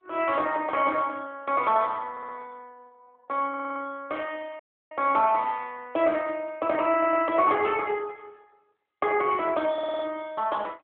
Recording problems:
phone line; 240 Hz to 3.4 kHz, AMR-NB
stutter; 4 times, first at 2 s
dropout; at 4.5 s

